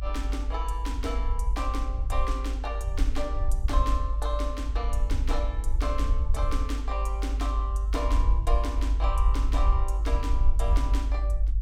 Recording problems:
rumble; below 52 Hz, SNR -6 dB

